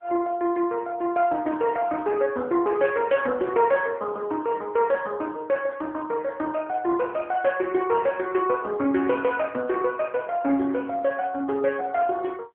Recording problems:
phone line; 240 Hz to 3.3 kHz, AMR-NB

